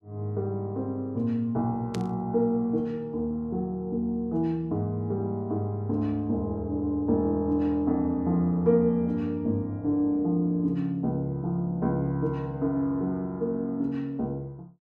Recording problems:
burst of static; at 2 s; peak -7 dB vs average level

